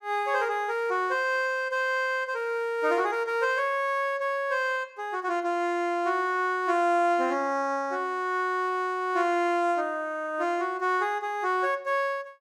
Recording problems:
none

